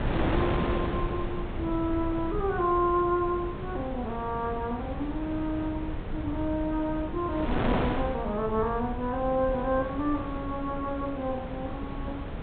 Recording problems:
treble missing; nothing above 4 kHz
rumble; below 110 Hz, SNR 10 dB
wind noise; below 720 Hz, SNR 5 dB

